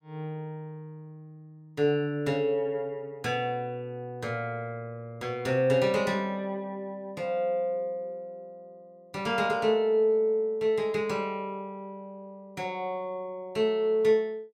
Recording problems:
none

